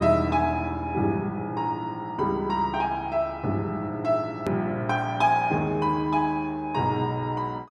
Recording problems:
click at an edit; at 4.5 s

